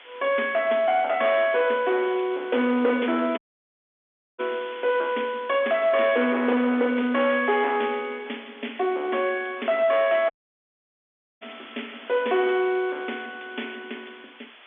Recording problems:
telephone audio; 220 Hz to 3.5 kHz, G.711
distortion; soft clipping, signal-to-distortion ratio 11 dB
background hiss; SNR 21 dB
dropout; at 3.5 s for 1 s and at 10 s for 1 s

